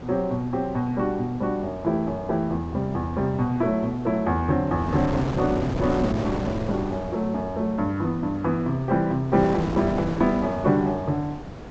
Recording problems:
treble cut off; nothing above 8 kHz
wind on the microphone; below 620 Hz, SNR 9 dB

